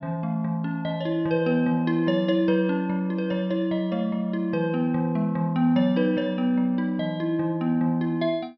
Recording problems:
treble missing; nothing above 5.5 kHz

